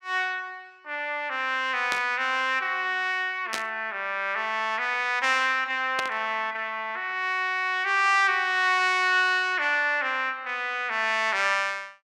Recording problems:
static burst; at 2 s, at 3.5 s and at 6 s; peak -1 dB vs average level

